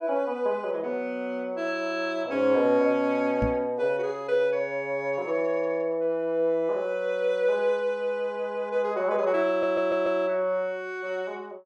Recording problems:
microphone bump; at 3.5 s; peak +3 dB vs average level
stutter; at 9.5 s

